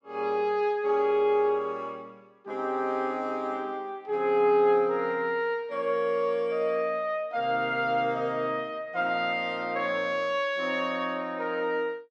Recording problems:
none

